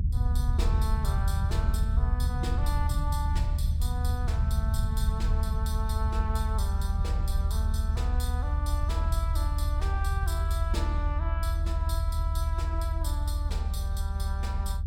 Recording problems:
rumble; below 76 Hz, SNR -9 dB

